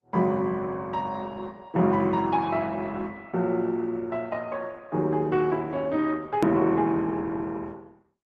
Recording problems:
lossy codec; Opus, then Opus, log-spectral distance 2 dB, nothing above 13.1 kHz
click at an edit; at 6.5 s

